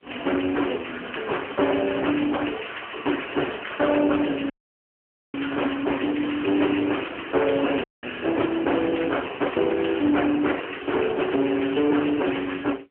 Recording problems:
telephone audio; 240 Hz to 3.1 kHz, AMR-NB
distortion; hard clipping, uneven, signal-to-distortion ratio 6 dB
dropout; at 4.5 s for 1 s and at 8 s

